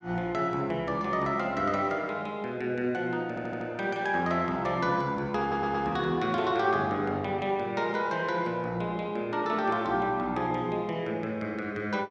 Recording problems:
stutter; at 3.5 s and at 5.5 s

